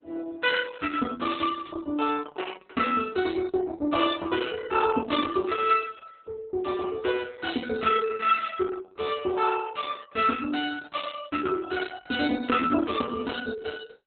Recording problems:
codec artefacts; Opus, log-spectral distance 5 dB, nothing above 4 kHz

